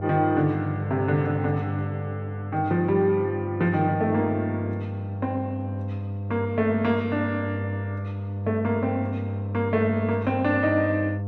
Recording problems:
hum; 50 Hz, harmonics up to 700 Hz, SNR 6 dB

